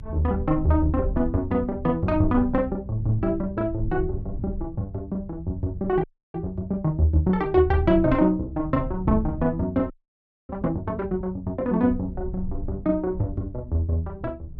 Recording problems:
rumble; below 92 Hz, SNR 11 dB
frozen audio; at 6 s and at 10 s for 0.5 s

